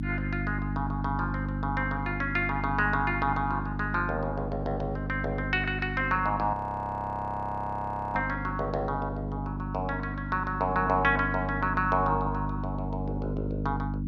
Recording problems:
electrical hum; 50 Hz, harmonics up to 300 Hz, SNR 4 dB
audio freezing; at 6.5 s for 1.5 s

